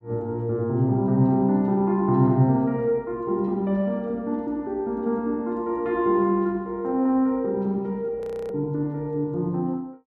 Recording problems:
audio freezing; at 8 s

